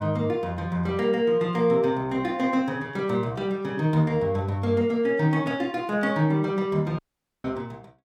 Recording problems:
dropout; at 7 s

